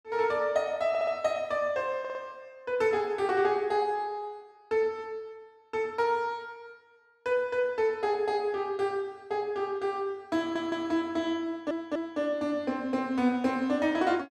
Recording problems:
stutter; 4 times, first at 1 s

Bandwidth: 14 kHz